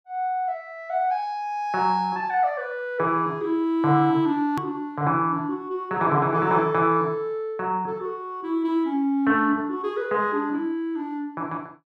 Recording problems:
click at an edit; at 4.5 s

